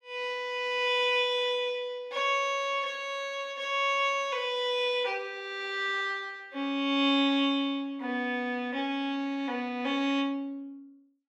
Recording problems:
none

